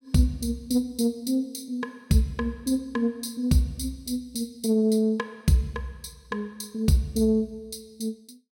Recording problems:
none

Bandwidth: 16.5 kHz